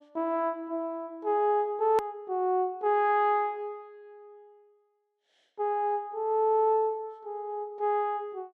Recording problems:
edit click; at 2 s

